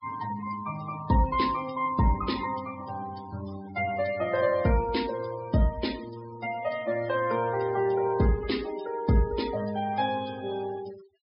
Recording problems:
treble missing; nothing above 5.5 kHz
noise reduction artefacts; signal-to-artefact ratio 17 dB

